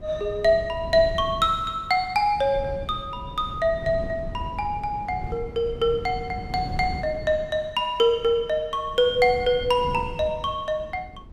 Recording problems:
wind on the microphone; below 190 Hz, SNR 13 dB

